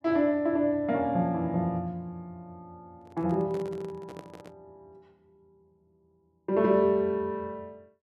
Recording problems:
microphone handling noise; from 3 to 4.5 s; peak -11 dB vs average level

